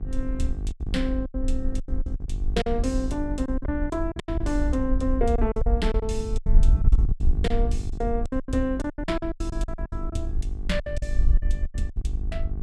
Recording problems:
electrical hum; 50 Hz, harmonics up to 1.1 kHz, SNR 11 dB
rumble; below 54 Hz, SNR 3 dB
wind noise; below 58 Hz, SNR 1 dB
packet loss; 17% of the sound replaced, filled with silence

